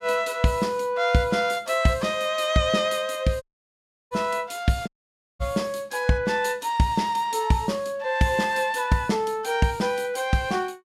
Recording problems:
audio cutting out; at 3.5 s for 0.5 s and at 5 s for 0.5 s

